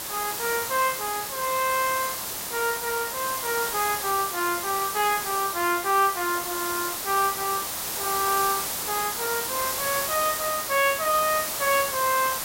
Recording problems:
hiss; slope -1 dB per octave, SNR 2 dB

